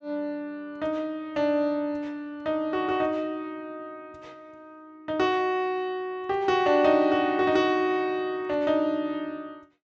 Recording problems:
treble missing; nothing above 8 kHz

